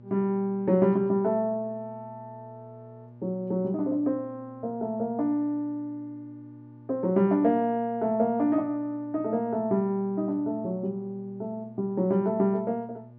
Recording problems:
hum; 60 Hz, harmonics up to 840 Hz, SNR 21 dB

